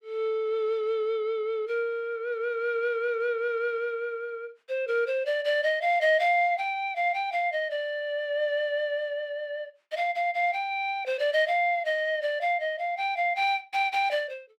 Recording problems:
none

